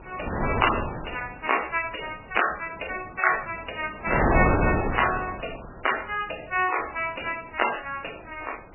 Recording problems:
codec artefacts; MP3, log-spectral distance 11 dB, nothing above 2.9 kHz
wind on the microphone; below 950 Hz, SNR -1 dB

